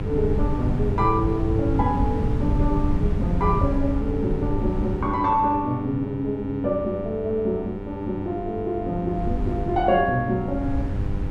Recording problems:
mains hum; 50 Hz, harmonics up to 1.9 kHz, SNR 10 dB
wind noise; below 130 Hz, SNR 3 dB

